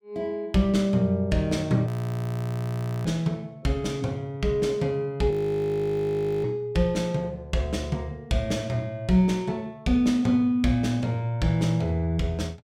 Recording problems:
audio freezing; at 2 s for 1 s and at 5.5 s for 1 s

